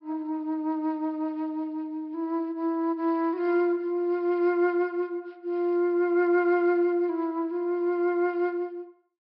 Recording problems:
treble cut off; nothing above 5.4 kHz

